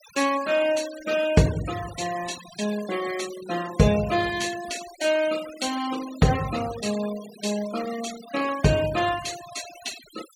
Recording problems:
denoising artefacts; signal-to-artefact ratio 13 dB

